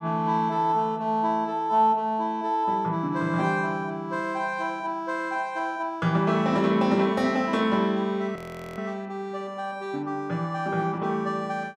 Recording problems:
audio freezing; at 8.5 s

